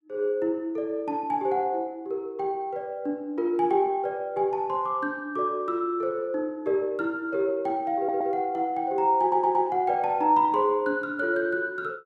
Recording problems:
stutter; at 8 s and at 9 s

